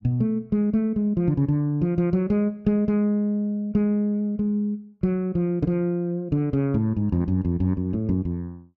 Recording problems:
none

